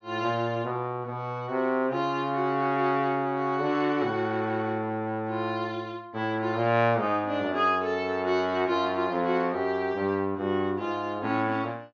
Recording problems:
treble missing; nothing above 6.8 kHz

